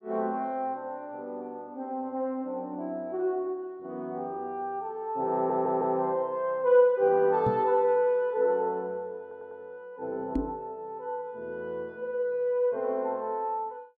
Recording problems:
stutter; at 5.5 s and at 9 s
microphone bump; at 7.5 s and at 10 s; peak +4 dB vs average level

